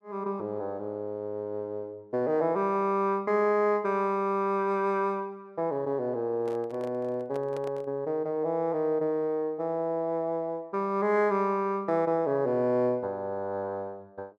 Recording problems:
microphone handling noise; from 6.5 to 8 s; peak -7 dB vs average level

